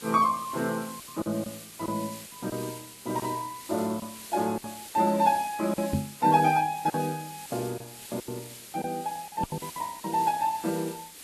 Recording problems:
lossy codec; Vorbis, log-spectral distance 2 dB
background hiss; SNR 13 dB
packet loss; 8% of the sound replaced, filled with silence
microphone bump; at 6 s and at 9.5 s; peak +5 dB vs average level

